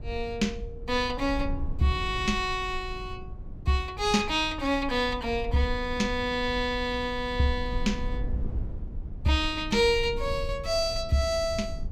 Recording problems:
rumble; below 76 Hz, SNR 10 dB

